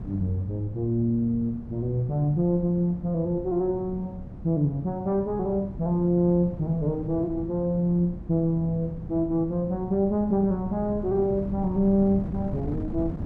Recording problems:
wind noise; below 210 Hz, SNR 12 dB

